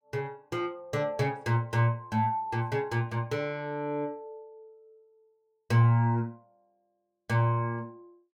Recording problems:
none

